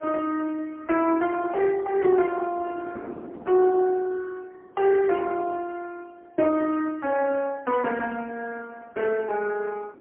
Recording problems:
telephone audio; 260 Hz to 3.2 kHz, AMR-NB, then MP3
wind noise; below 490 Hz, SNR 21 dB

